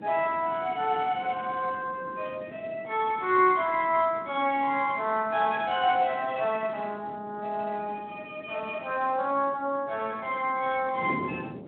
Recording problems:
phone line; 300 Hz to 3.3 kHz, Speex
wind on the microphone; below 430 Hz, SNR 16 dB

